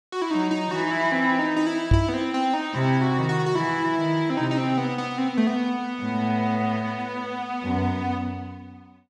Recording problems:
knock on the microphone; at 2 s; peak +8 dB vs average level

